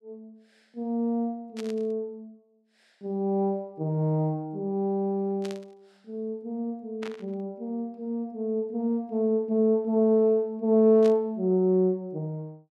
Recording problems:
static burst; 4 times, first at 1.5 s; peak -10 dB vs average level

